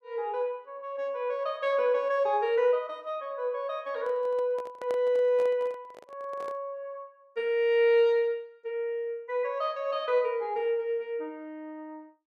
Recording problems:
handling noise; from 4 to 6.5 s; peak -7 dB vs average level

